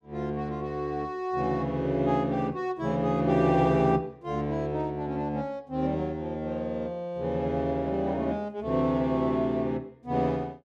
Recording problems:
none

